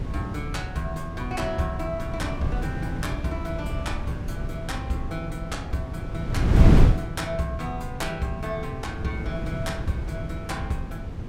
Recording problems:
wind noise; below 180 Hz, SNR -3 dB

